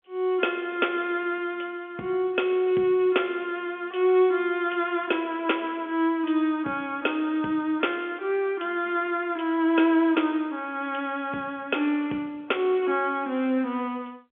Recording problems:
phone line; 170 Hz to 3.5 kHz, G.711

